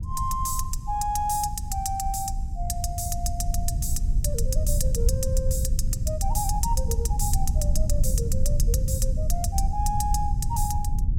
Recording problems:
rumble; below 78 Hz, SNR -2 dB

